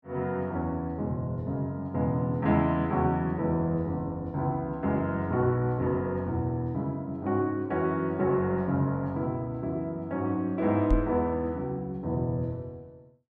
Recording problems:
microphone thump; at 11 s; peak +5 dB vs average level

